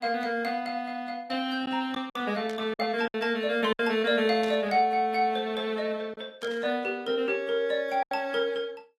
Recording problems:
codec artefacts; AAC, log-spectral distance 2 dB, nothing above 14.3 kHz
packet loss; 4% of the sound replaced, filled with silence
burst of static; at 2.5 s, at 4.5 s and at 6.5 s; peak -11 dB vs average level

